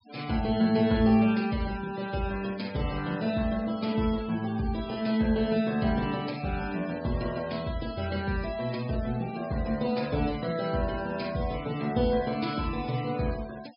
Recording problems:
low-pass filter; nothing above 5.5 kHz
noise reduction artefacts; signal-to-artefact ratio 19 dB

